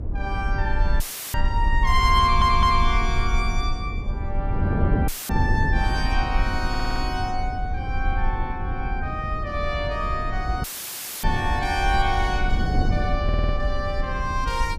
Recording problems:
rumble; below 56 Hz, SNR 2 dB
wind noise; below 250 Hz, SNR 5 dB
audio cutting out; at 1 s, at 5 s and at 11 s for 0.5 s; filled with static
audio stuttering; at 2 s, at 6.5 s and at 13 s

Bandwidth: 15 kHz